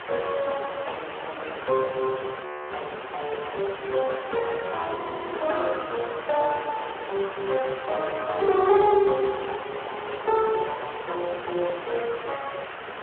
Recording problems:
phone line; 340 Hz to 3.6 kHz, Speex
hiss; SNR 9 dB
wind noise; below 750 Hz, SNR 24 dB
frozen audio; at 2.5 s and at 5 s
crackle; from 3.5 to 4.5 s, from 7 to 9 s and from 10 to 12 s; loose cable, SNR 27 dB

